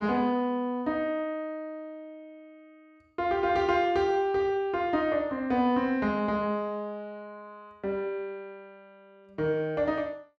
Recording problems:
none

